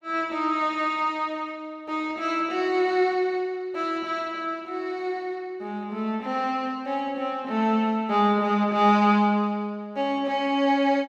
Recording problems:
none

